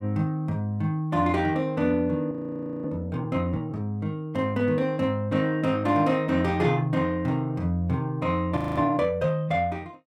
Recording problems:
frozen audio; at 2.5 s for 0.5 s and at 8.5 s

